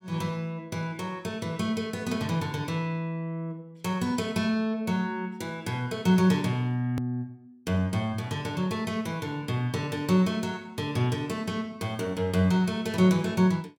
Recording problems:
hard cut with a click; at 7 s

